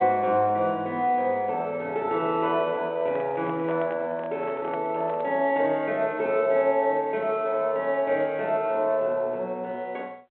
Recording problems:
telephone audio; 300 Hz to 3.3 kHz, G.726
microphone handling noise; from 3 to 5.5 s; peak -9 dB vs average level

